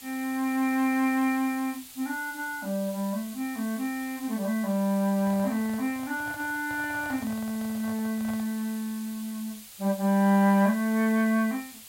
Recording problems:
background hiss; slope +2 dB per octave, SNR 16 dB
handling noise; from 5 to 8.5 s; peak -11 dB vs average level

